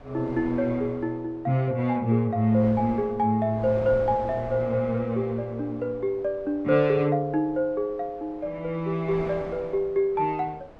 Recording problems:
wind noise; below 760 Hz, SNR 18 dB

